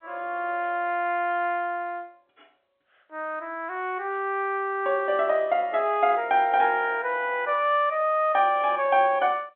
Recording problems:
phone line; 280 Hz to 3.5 kHz, G.711

